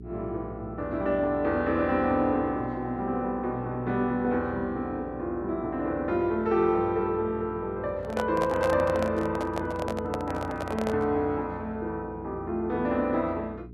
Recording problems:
hum; 60 Hz, harmonics up to 420 Hz, SNR 17 dB
handling noise; from 8 to 11 s; peak +1 dB vs average level

